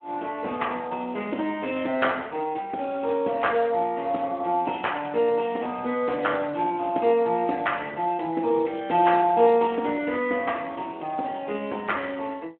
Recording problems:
phone line; 220 Hz to 3.3 kHz, Speex

